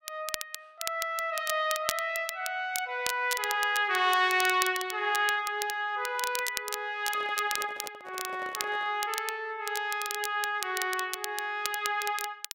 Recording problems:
crackle; vinyl, SNR 8 dB
microphone handling noise; from 7 to 9 s; peak -11 dB vs average level

